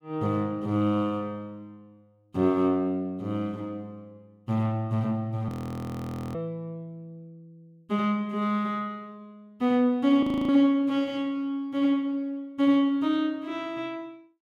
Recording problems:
frozen audio; at 5.5 s for 1 s and at 10 s

